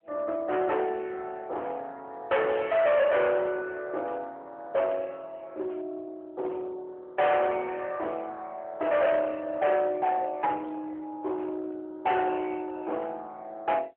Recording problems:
phone line; 390 Hz to 2.6 kHz, AMR-NB
distortion; hard clipping, uneven, signal-to-distortion ratio 7 dB

